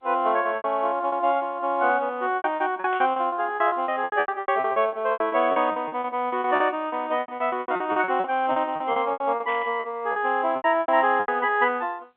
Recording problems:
phone line; 300 Hz to 3.5 kHz, G.711
packet loss; 19% of the sound replaced, filled with repeated pitch periods
static burst; at 3 s and at 9.5 s; peak -10 dB vs average level

